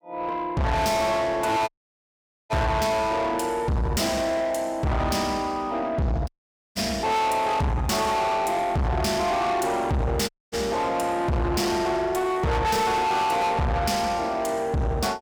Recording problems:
distorted audio; soft clipping, signal-to-distortion ratio 6 dB
dropout; at 1.5 s for 1 s, at 6.5 s and at 10 s

